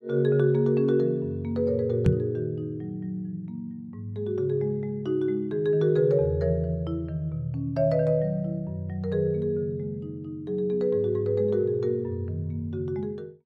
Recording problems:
microphone bump; at 2 s; peak +8 dB vs average level

